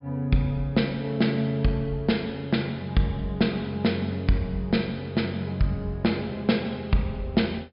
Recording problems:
treble missing; nothing above 5.5 kHz

